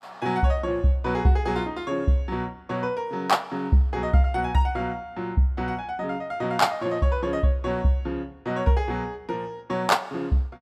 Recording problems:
none

